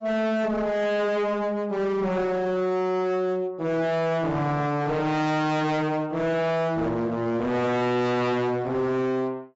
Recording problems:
lossy codec; AAC, log-spectral distance 2 dB, nothing above 7.6 kHz
distorted audio; hard clipping, signal-to-distortion ratio 7 dB

